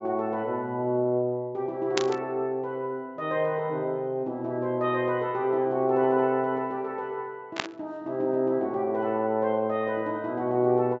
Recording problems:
low-pass filter; nothing above 8 kHz
burst of static; at 2 s and at 7.5 s; peak +4 dB vs average level

